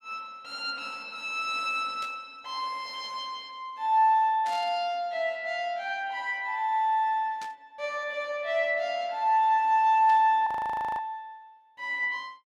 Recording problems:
static burst; 4 times, first at 2 s; peak -12 dB vs average level
frozen audio; at 10 s for 0.5 s

